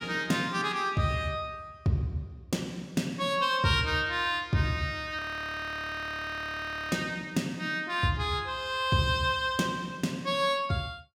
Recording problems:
frozen audio; at 5 s for 1.5 s

